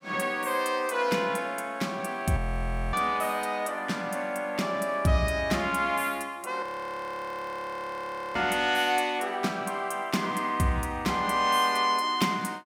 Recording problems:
frozen audio; at 2.5 s for 0.5 s and at 6.5 s for 1.5 s

